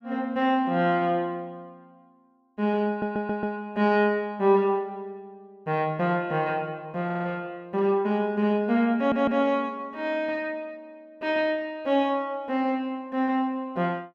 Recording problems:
stutter; at 3 s, at 7 s and at 9 s

